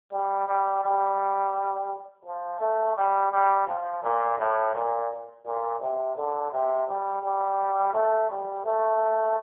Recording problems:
phone line; 300 Hz to 2.5 kHz, AMR-NB

